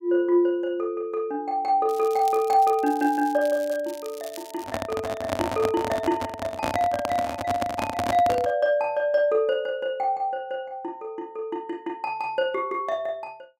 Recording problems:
crackle; from 2 to 4.5 s; loose cable, SNR 19 dB
microphone handling noise; from 4.5 to 8.5 s; peak +3 dB vs average level

